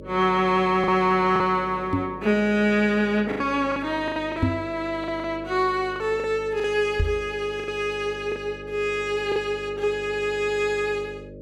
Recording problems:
hum; 50 Hz, harmonics up to 600 Hz, SNR 17 dB
packet loss; 6% of the sound replaced, filled with the last packet
microphone thump; at 2 s, at 4.5 s and at 7 s; peak +5 dB vs average level

